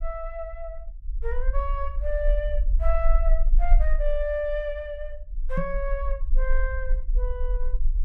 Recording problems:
low-frequency rumble; below 40 Hz, strongest tone 26 Hz, SNR -4 dB
microphone thump; at 5.5 s; peak +6 dB vs average level

